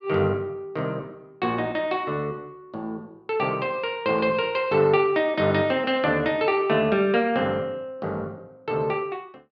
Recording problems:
none

